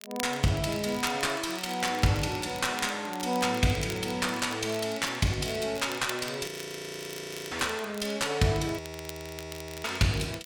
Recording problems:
distorted audio; soft clipping, signal-to-distortion ratio 12 dB
crackle; vinyl, SNR 15 dB
audio freezing; at 6.5 s for 1 s and at 9 s for 1 s

